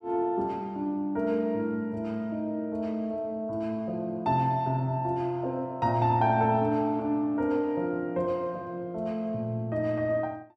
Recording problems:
none

